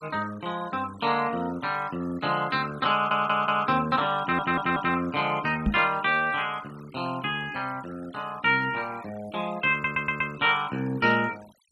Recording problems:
noise reduction artefacts; signal-to-artefact ratio 22 dB
stutter; at 3 s, at 4 s and at 9.5 s
knock on the microphone; at 5.5 s; peak +4 dB vs average level

